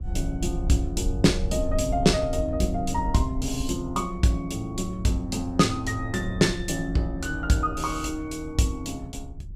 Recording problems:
wind noise; below 76 Hz, SNR 9 dB

